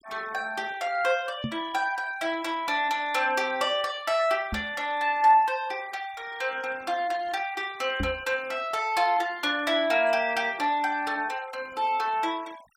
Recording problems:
noise reduction artefacts; signal-to-artefact ratio 23 dB
knock on the microphone; at 1.5 s, at 4.5 s and at 8 s; peak -1 dB vs average level

